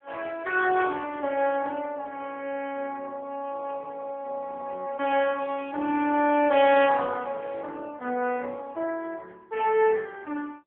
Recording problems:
phone line; 260 Hz to 3.3 kHz, AMR-NB

